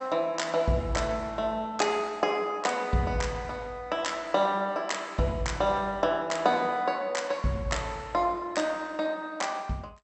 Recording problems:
lossy codec; MP2, log-spectral distance 3 dB, nothing above 8 kHz

